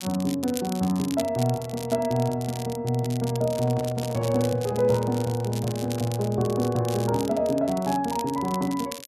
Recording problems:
crackling; vinyl, SNR 14 dB
handling noise; from 3.5 to 6.5 s; peak -10 dB vs average level

